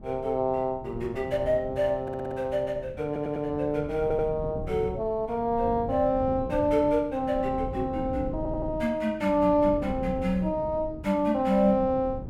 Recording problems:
wind noise; below 230 Hz, SNR 13 dB
stutter; 4 times, first at 2 s

